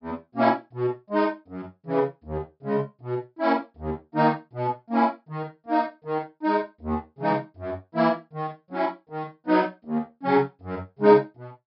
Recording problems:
low-pass filter; nothing above 5.3 kHz

